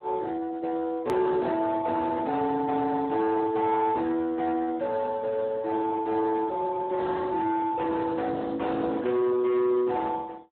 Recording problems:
phone line; 280 Hz to 2.1 kHz, Speex
distorted audio; soft clipping, signal-to-distortion ratio 12 dB
edit click; at 1 s

